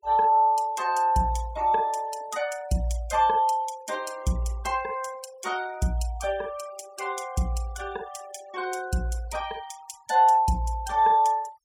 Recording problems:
noise reduction artefacts; signal-to-artefact ratio 22 dB

